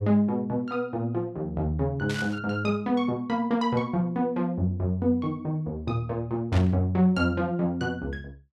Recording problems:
burst of static; at 2 s and at 6.5 s; peak -5 dB vs average level

